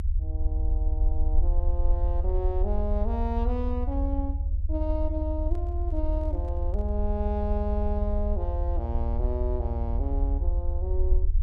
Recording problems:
rumble; below 74 Hz, SNR -5 dB
handling noise; from 5.5 to 7 s; peak -12 dB vs average level

